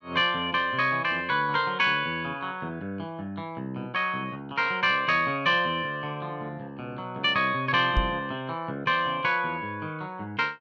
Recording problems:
microphone bump; at 8 s; peak +3 dB vs average level

